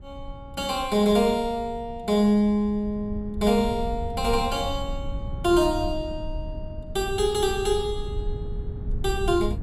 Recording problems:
low-frequency rumble; below 90 Hz, SNR 11 dB

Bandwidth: 15.5 kHz